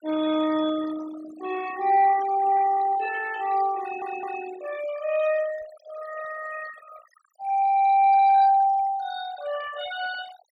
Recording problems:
noise reduction artefacts; signal-to-artefact ratio 16 dB
audio stuttering; at 4 s

